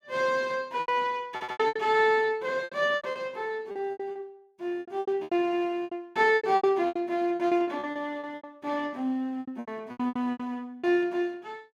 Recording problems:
lost packets; 17% of the sound replaced, filled with repeated pitch periods
stutter; at 1.5 s

